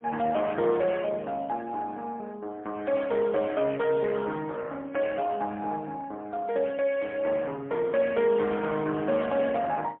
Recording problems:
phone line; 170 Hz to 3.3 kHz, AMR-NB, then MP3

